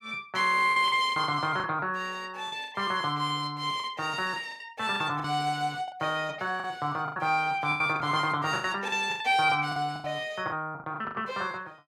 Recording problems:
packet loss; 11% of the sound replaced, filled with the last packet

